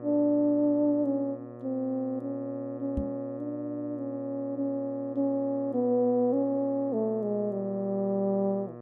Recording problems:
hum; 60 Hz, harmonics up to 1.3 kHz, SNR 14 dB
microphone thump; at 3 s; peak 0 dB vs average level

